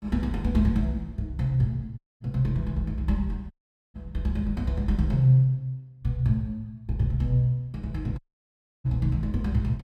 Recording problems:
audio cutting out; at 2 s, at 3.5 s and at 8 s for 0.5 s

